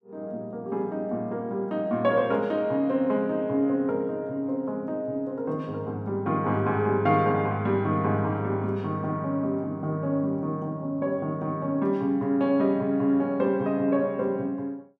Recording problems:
none

